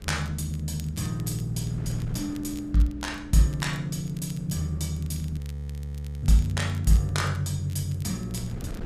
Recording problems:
wind noise; below 220 Hz, SNR 17 dB
crackling; vinyl, SNR 24 dB
frozen audio; at 5.5 s for 1 s

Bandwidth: 14.5 kHz